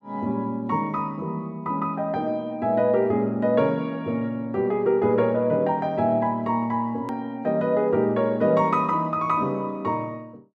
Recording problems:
click at an edit; at 7 s

